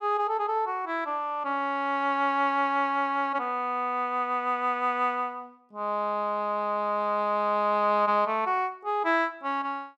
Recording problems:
none

